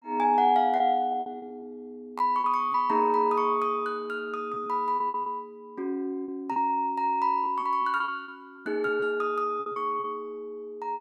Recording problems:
lost packets; 9% of the sound replaced, filled with repeated pitch periods

